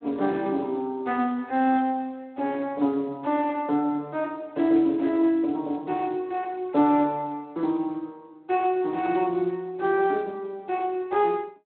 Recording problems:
telephone audio; 240 Hz to 3.7 kHz, Speex

